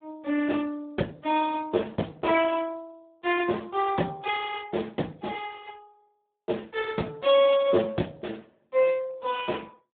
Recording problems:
phone line; 150 Hz to 3.5 kHz, Speex

